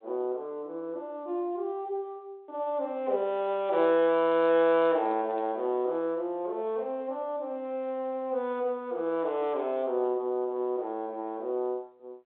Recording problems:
telephone audio; 280 Hz to 3.6 kHz, G.726

